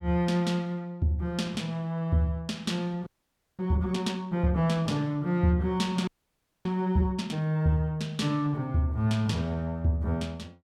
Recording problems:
frozen audio; at 3 s for 0.5 s and at 6 s for 0.5 s

